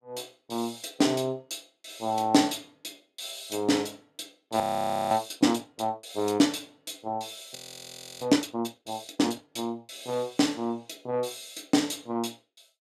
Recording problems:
frozen audio; at 4.5 s for 0.5 s and at 7.5 s for 0.5 s

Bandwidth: 14.5 kHz